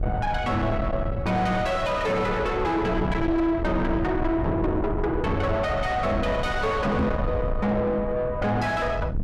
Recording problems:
distortion; soft clipping, signal-to-distortion ratio 6 dB
rumble; below 270 Hz, SNR 5 dB
microphone thump; at 7 s; peak +6 dB vs average level

